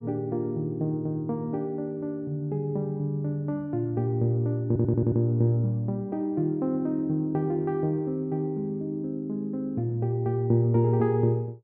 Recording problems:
audio stuttering; at 4.5 s

